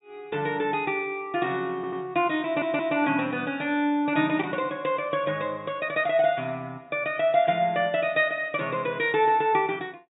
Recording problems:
treble missing; nothing above 4 kHz
stutter; at 2 s and at 2.5 s

